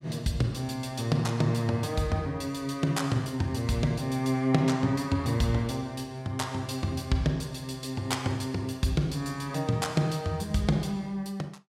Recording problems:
none

